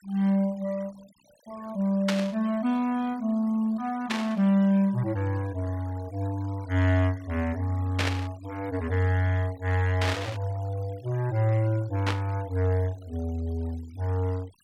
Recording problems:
noise reduction artefacts; signal-to-artefact ratio 24 dB
static burst; 5 times, first at 2 s; peak +3 dB vs average level

